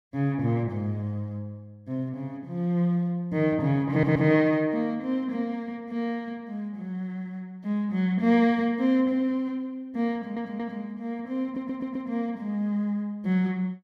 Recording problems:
stutter; at 4 s, at 10 s and at 11 s

